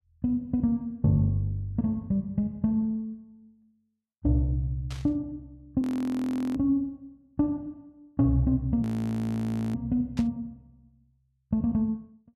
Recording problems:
burst of static; at 5 s and at 10 s; peak -10 dB vs average level
audio freezing; at 6 s for 0.5 s and at 9 s for 1 s

